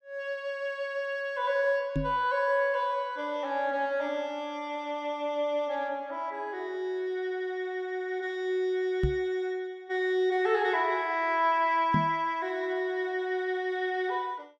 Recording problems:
microphone bump; at 2 s, at 9 s and at 12 s; peak +4 dB vs average level

